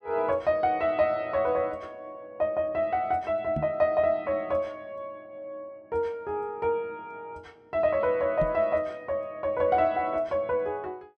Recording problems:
knock on the microphone; at 3.5 s and at 8.5 s; peak -2 dB vs average level

